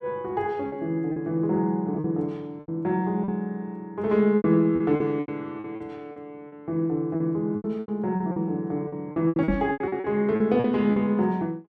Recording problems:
packet loss; 12% of the sound replaced, filled with repeated pitch periods
microphone thump; at 9.5 s; peak +3 dB vs average level

